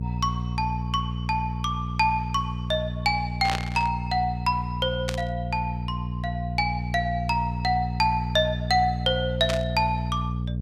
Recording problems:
hum; 60 Hz, harmonics up to 480 Hz, SNR 4 dB
burst of static; at 3.5 s, at 5 s and at 9.5 s; peak +2 dB vs average level

